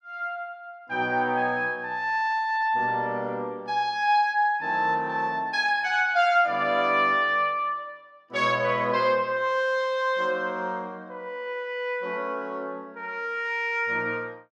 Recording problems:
none

